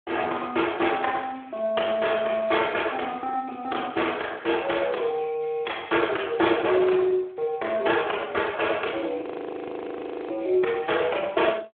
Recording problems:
telephone audio; 300 Hz to 3.5 kHz, Speex
audio freezing; at 9.5 s for 1 s

